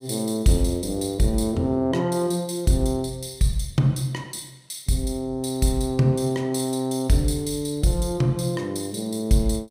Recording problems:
none

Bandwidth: 15.5 kHz